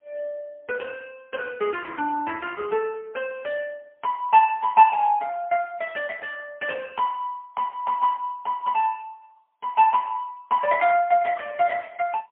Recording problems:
telephone audio; 320 Hz to 3 kHz, AMR-NB, then MP3

